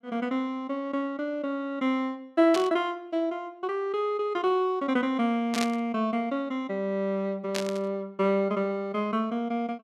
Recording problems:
burst of static; at 2.5 s, at 5.5 s and at 7.5 s; peak 0 dB vs average level

